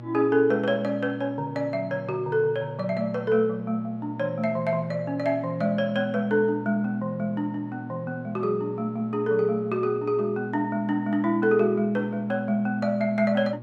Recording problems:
hum; 60 Hz, harmonics up to 1.1 kHz, SNR 14 dB

